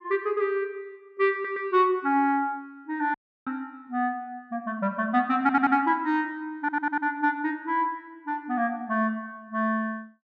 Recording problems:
audio stuttering; at 1.5 s, at 5.5 s and at 6.5 s
dropout; at 3 s

